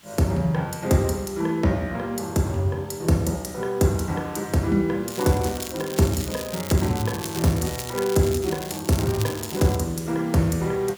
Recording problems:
background hiss; SNR 26 dB
crackling; from 5 to 8.5 s and from 8.5 to 10 s; loose cable, SNR 11 dB

